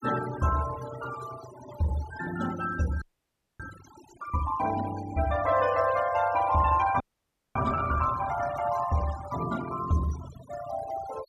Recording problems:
noise reduction artefacts; signal-to-artefact ratio 13 dB
audio freezing; at 3 s for 0.5 s and at 7 s for 0.5 s

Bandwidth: 14.5 kHz